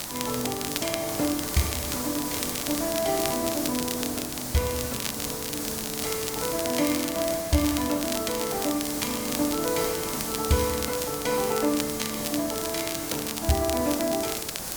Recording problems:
background hiss; SNR 3 dB
crackle; vinyl, SNR 6 dB

